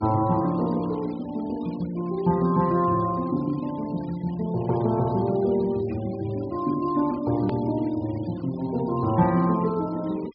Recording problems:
low-pass filter; nothing above 5.1 kHz
noise reduction artefacts; signal-to-artefact ratio 23 dB
edit click; at 7.5 s

